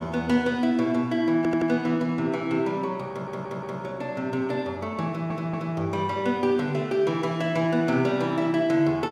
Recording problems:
stutter; at 1.5 s, at 3 s and at 5 s

